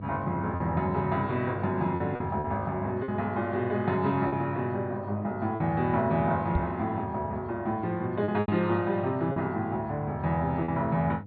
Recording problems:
treble missing; nothing above 4.4 kHz
hum; 50 Hz, harmonics up to 500 Hz, SNR 12 dB
lost packets; 4% of the sound replaced, filled with repeated pitch periods
knock on the microphone; at 6.5 s; peak +3 dB vs average level

